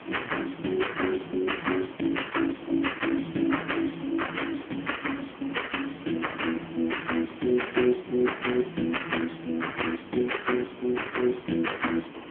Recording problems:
phone line; 190 Hz to 3.2 kHz, AMR-NB
background hiss; SNR 15 dB

